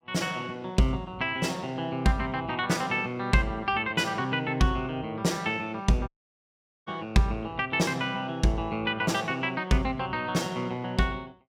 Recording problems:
dropout; at 6 s for 1 s

